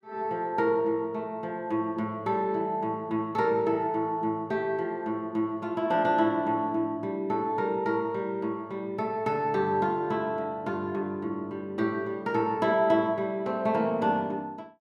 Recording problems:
none

